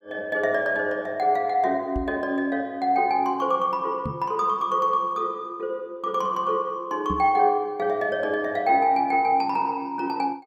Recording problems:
microphone bump; at 2 s, at 4 s and at 7 s; peak -3 dB vs average level

